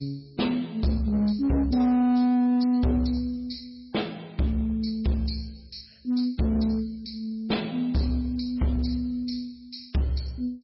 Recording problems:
lossy compression; MP3, log-spectral distance 4 dB, nothing above 5.5 kHz
distorted audio; hard clipping, uneven, signal-to-distortion ratio 10 dB

